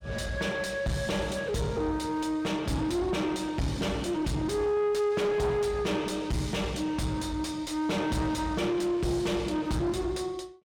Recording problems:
distortion; soft clipping, signal-to-distortion ratio 6 dB

